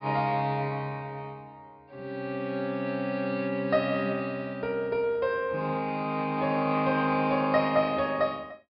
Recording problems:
treble cut off; nothing above 5.5 kHz

